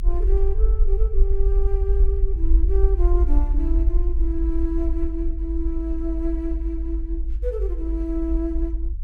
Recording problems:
rumble; below 52 Hz, SNR -6 dB

